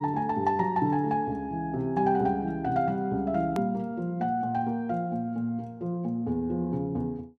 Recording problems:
hard cut with a click; at 3.5 s

